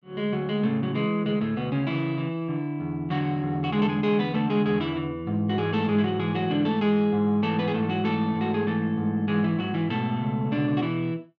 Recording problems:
none

